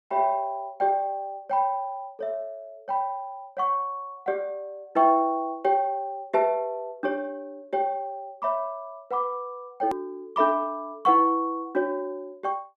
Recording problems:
click at an edit; at 10 s

